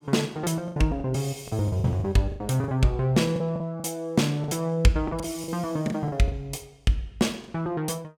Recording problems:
packet loss; 11% of the sound replaced, filled with the last packet

